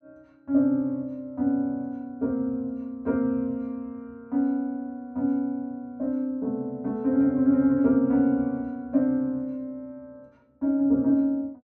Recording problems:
none

